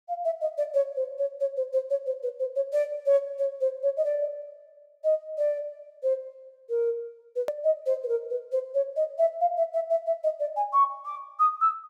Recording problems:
click at an edit; at 7.5 s

